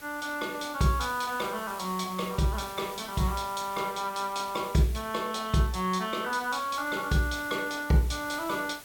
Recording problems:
hiss; slope -1 dB per octave, SNR 16 dB

